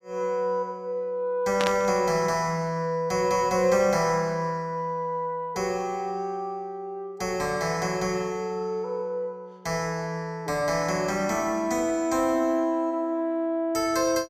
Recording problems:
static burst; at 1.5 s; peak +2 dB vs average level

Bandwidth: 14.5 kHz